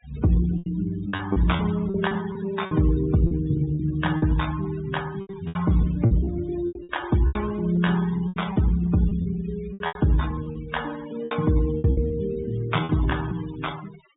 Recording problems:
treble missing; nothing above 4 kHz
denoising artefacts; signal-to-artefact ratio 16 dB
lost packets; 12% of the sound replaced, filled with repeated pitch periods

